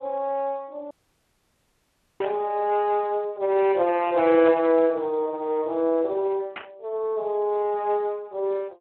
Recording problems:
telephone audio; 280 Hz to 3.3 kHz, Speex
dropout; at 1 s for 1.5 s
burst of static; at 2 s, at 4.5 s and at 6.5 s; peak -6 dB vs average level

